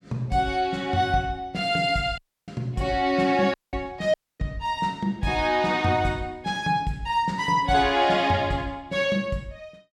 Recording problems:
dropout; at 2 s, at 3.5 s and at 4 s

